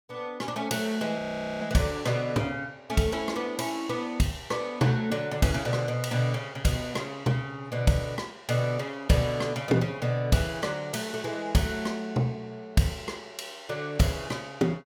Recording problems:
frozen audio; at 1 s

